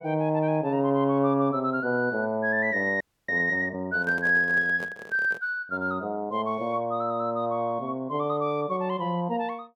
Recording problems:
audio freezing; at 3 s
microphone handling noise; from 4 to 5.5 s; peak -9 dB vs average level

